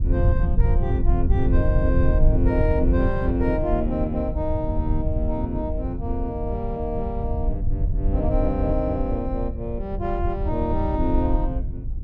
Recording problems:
low-frequency rumble; below 84 Hz, SNR -1 dB

